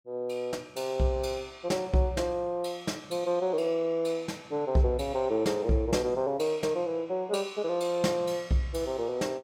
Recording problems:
none

